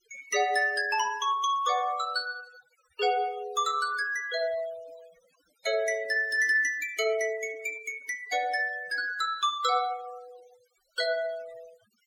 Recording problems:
denoising artefacts; signal-to-artefact ratio 20 dB

